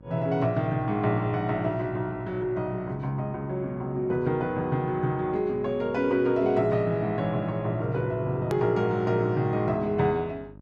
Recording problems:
hum; 50 Hz, harmonics up to 950 Hz, SNR 22 dB
click at an edit; at 8.5 s

